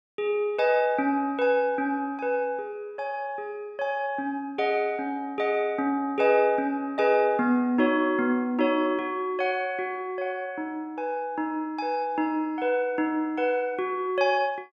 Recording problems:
none

